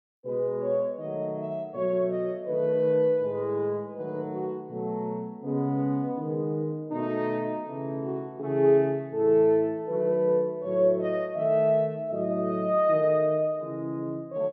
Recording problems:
none

